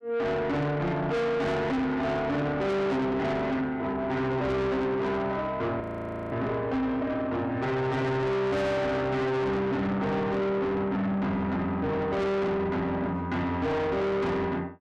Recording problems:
distortion; soft clipping, signal-to-distortion ratio 6 dB
frozen audio; at 6 s for 0.5 s

